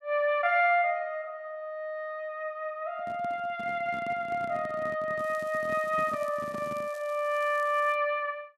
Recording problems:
microphone handling noise; from 3 to 7 s; peak -8 dB vs average level
crackling; from 5 to 8 s; loose cable, SNR 25 dB

